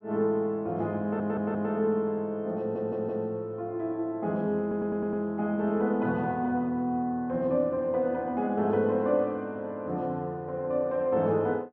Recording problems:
audio stuttering; at 1 s, at 2.5 s and at 4.5 s

